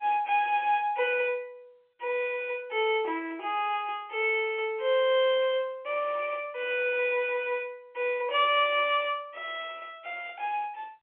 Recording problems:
telephone audio; 280 Hz to 3.2 kHz, G.711

